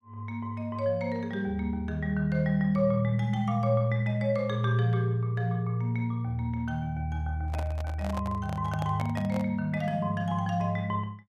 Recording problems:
microphone handling noise; from 7.5 to 9.5 s; peak -5 dB vs average level

